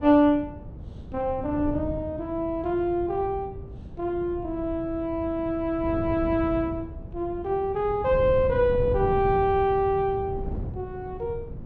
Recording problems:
wind on the microphone; below 180 Hz, SNR 11 dB

